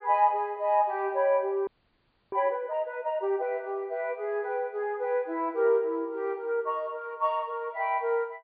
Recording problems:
treble missing; nothing above 4.8 kHz
audio freezing; at 1.5 s for 0.5 s

